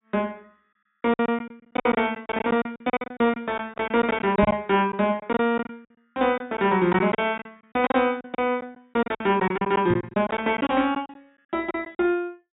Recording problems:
low-pass filter; nothing above 4 kHz
packet loss; 15% of the sound replaced, filled with silence
microphone thump; at 4.5 s and at 10 s; peak 0 dB vs average level

